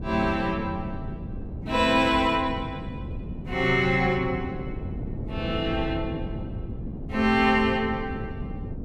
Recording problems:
wind noise; below 230 Hz, SNR 10 dB

